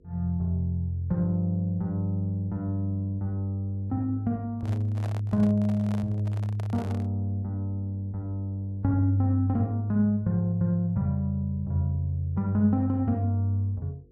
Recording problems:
electrical hum; 50 Hz, harmonics up to 500 Hz, SNR 31 dB
handling noise; from 4.5 to 7 s; peak -10 dB vs average level

